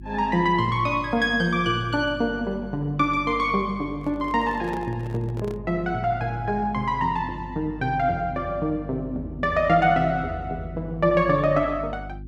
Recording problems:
hum; 50 Hz, harmonics up to 350 Hz, SNR 16 dB
handling noise; from 4 to 5.5 s; peak -9 dB vs average level

